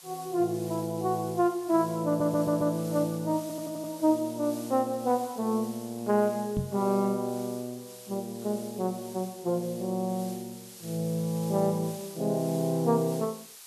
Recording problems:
hiss; slope +3 dB per octave, SNR 17 dB
audio stuttering; at 2 s and at 3.5 s
knock on the microphone; at 6.5 s; peak +2 dB vs average level

